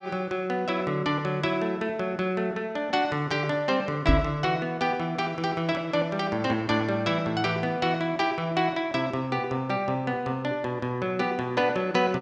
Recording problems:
microphone bump; at 4 s; peak +7 dB vs average level

